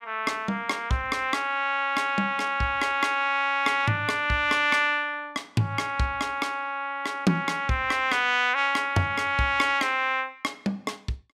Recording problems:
none

